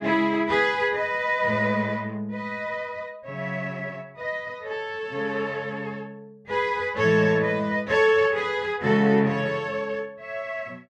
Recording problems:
none

